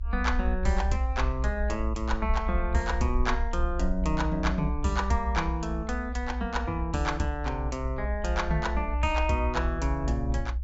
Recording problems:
low-pass filter; nothing above 8 kHz
low-frequency rumble; below 62 Hz, strongest tone 62 Hz, SNR 2 dB

